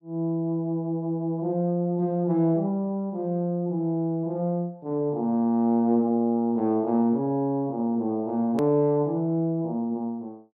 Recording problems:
hard cut with a click; at 8.5 s

